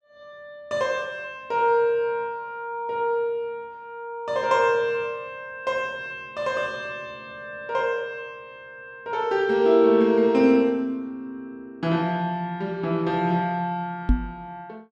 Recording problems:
microphone bump; at 14 s; peak +6 dB vs average level

